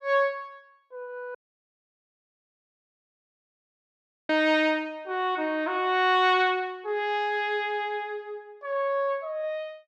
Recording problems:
dropout; at 1.5 s for 3 s

